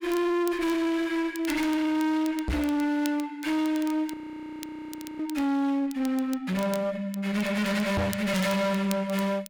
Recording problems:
distortion; hard clipping, uneven, signal-to-distortion ratio 4 dB
crackle; vinyl, SNR 19 dB
microphone bump; at 2.5 s and at 8 s; peak +3 dB vs average level
audio freezing; at 4 s for 1 s

